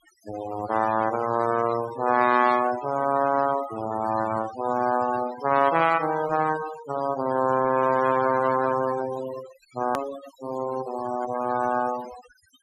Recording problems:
noise reduction artefacts; signal-to-artefact ratio 13 dB
edit click; at 10 s

